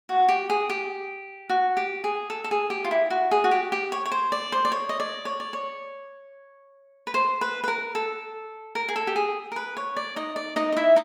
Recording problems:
none

